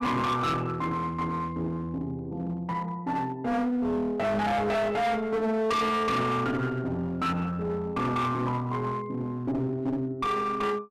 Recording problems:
distorted audio; hard clipping, uneven, signal-to-distortion ratio 7 dB

